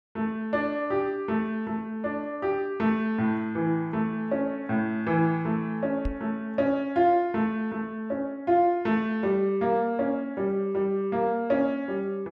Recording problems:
knock on the microphone; at 6 s; peak -1 dB vs average level

